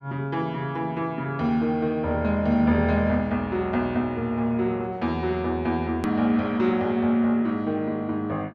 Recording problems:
edit click; at 6 s

